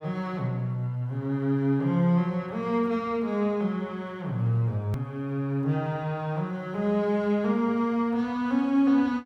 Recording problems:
hard cut with a click; at 5 s

